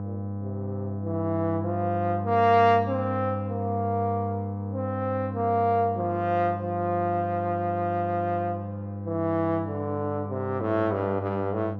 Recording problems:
hum; 50 Hz, harmonics up to 1 kHz, SNR 6 dB

